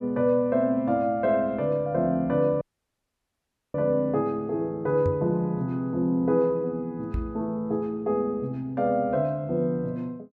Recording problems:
audio cutting out; at 2.5 s for 1 s
knock on the microphone; at 5 s and at 7 s; peak 0 dB vs average level

